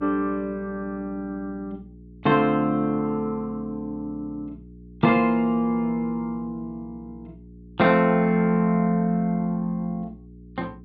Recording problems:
hum; 60 Hz, harmonics up to 420 Hz, SNR 22 dB

